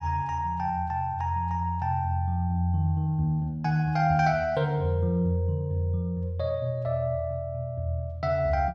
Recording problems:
none

